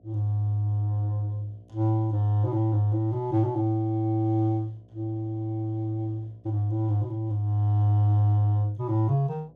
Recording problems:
mains hum; 60 Hz, harmonics up to 720 Hz, SNR 33 dB

